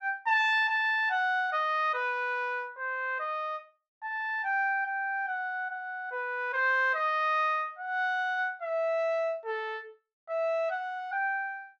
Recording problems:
none

